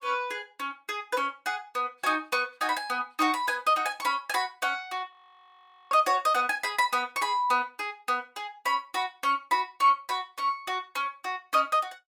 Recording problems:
audio freezing; at 5 s for 1 s

